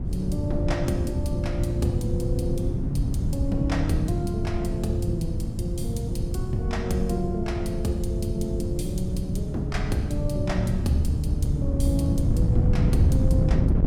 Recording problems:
wind on the microphone; below 140 Hz, SNR -2 dB

